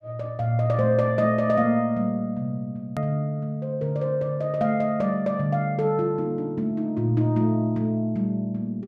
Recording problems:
hard cut with a click; at 3 s

